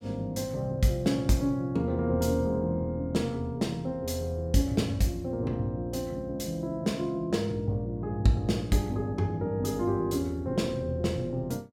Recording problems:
none

